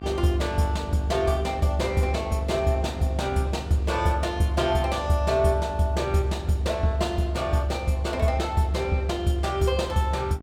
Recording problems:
mains hum; 50 Hz, harmonics up to 1.6 kHz, SNR 17 dB

